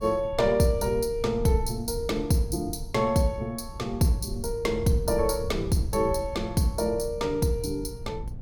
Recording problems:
rumble; below 94 Hz, SNR 12 dB

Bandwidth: 18 kHz